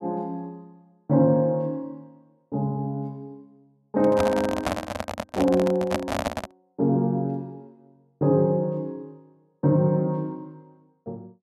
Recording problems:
handling noise; from 4 to 6.5 s; peak +3 dB vs average level

